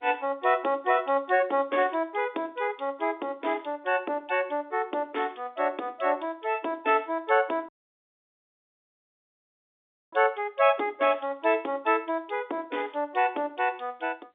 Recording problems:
phone line; 260 Hz to 3.6 kHz, G.711
dropout; at 7.5 s for 2.5 s

